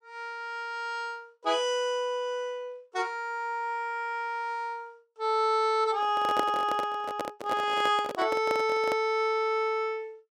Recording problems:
microphone handling noise; from 6 to 9 s; peak +2 dB vs average level

